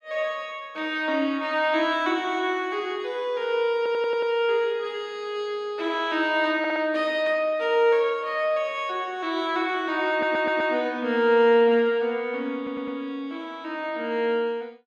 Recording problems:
audio stuttering; 4 times, first at 4 s

